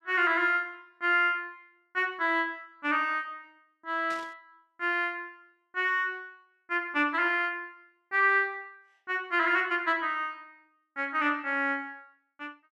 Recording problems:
static burst; at 4 s; peak -13 dB vs average level

